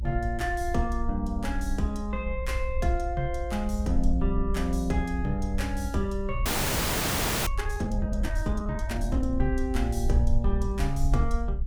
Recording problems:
rumble; below 60 Hz, SNR 1 dB
audio freezing; at 6.5 s for 1 s

